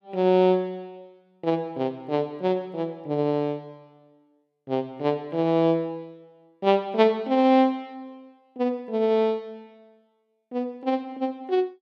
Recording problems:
none

